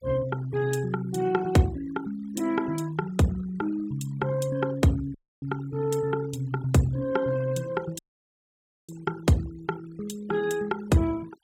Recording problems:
noise reduction artefacts; signal-to-artefact ratio 21 dB
audio cutting out; at 5 s and at 8 s for 1 s

